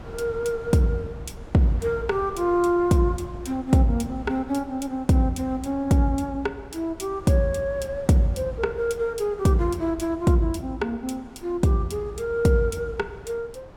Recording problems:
wind noise; below 560 Hz, SNR 20 dB

